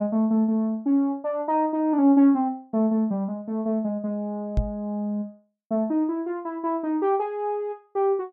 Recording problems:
microphone bump; at 4.5 s; peak +4 dB vs average level

